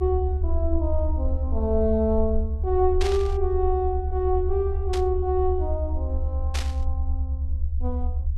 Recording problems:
low-frequency rumble; below 74 Hz, SNR 1 dB
burst of static; at 3 s, at 5 s and at 6.5 s; peak -2 dB vs average level

